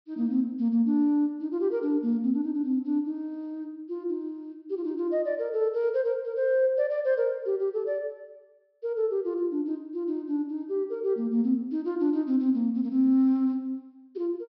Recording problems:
treble cut off; nothing above 5.5 kHz

